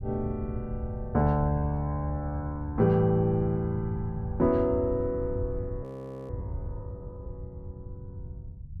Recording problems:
rumble; below 110 Hz, SNR 10 dB
audio freezing; at 6 s

